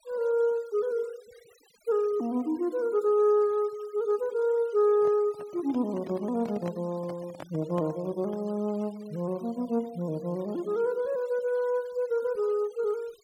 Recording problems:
denoising artefacts; signal-to-artefact ratio 26 dB
microphone handling noise; from 5 to 8.5 s; peak -9 dB vs average level

